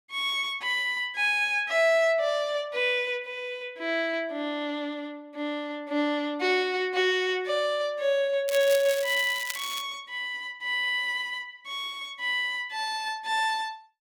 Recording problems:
crackling; from 8.5 to 10 s; loose cable, SNR 10 dB

